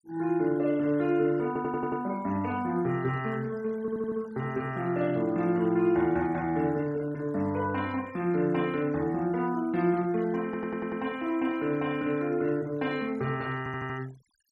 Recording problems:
noise reduction artefacts; signal-to-artefact ratio 23 dB
audio stuttering; 4 times, first at 1.5 s

